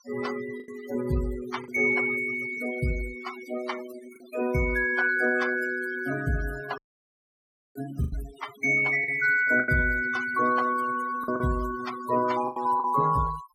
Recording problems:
noise reduction artefacts; signal-to-artefact ratio 14 dB
lost packets; 4% of the sound replaced, filled with the last packet
audio cutting out; at 7 s for 1 s

